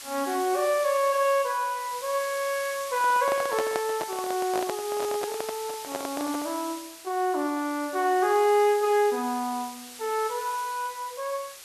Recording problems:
hiss; slope +2 dB per octave, SNR 12 dB
handling noise; from 3 to 6.5 s; peak +1 dB vs average level

